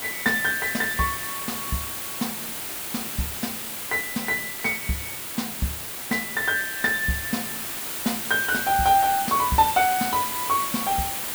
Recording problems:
background hiss; slope -1 dB per octave, SNR 4 dB

